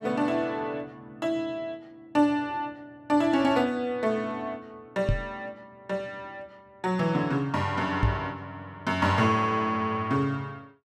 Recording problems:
knock on the microphone; at 5 s and at 8 s; peak +6 dB vs average level

